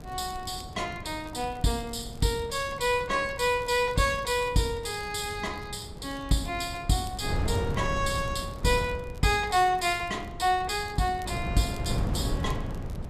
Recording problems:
wind on the microphone; below 210 Hz, SNR 9 dB
crackling; vinyl, SNR 27 dB

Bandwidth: 14 kHz